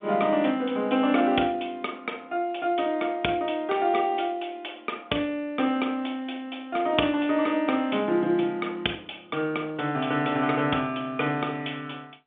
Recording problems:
telephone audio; 170 Hz to 3.6 kHz, G.711

